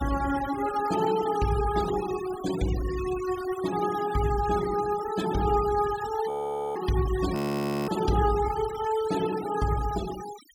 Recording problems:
denoising artefacts; signal-to-artefact ratio 13 dB
frozen audio; at 6.5 s and at 7.5 s for 0.5 s

